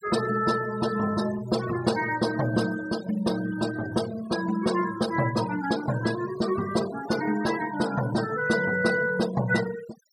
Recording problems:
denoising artefacts; signal-to-artefact ratio 13 dB

